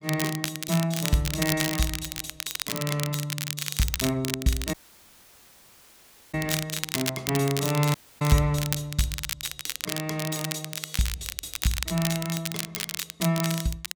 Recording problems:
crackle; vinyl, SNR 3 dB
audio cutting out; at 4.5 s for 1.5 s and at 8 s

